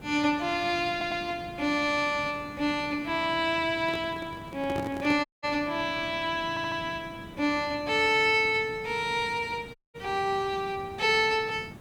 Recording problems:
background hiss; slope -7 dB per octave, SNR 18 dB
stutter; at 1 s and at 6.5 s
handling noise; from 4 to 5 s; peak -4 dB vs average level
dropout; at 5.5 s and at 10 s

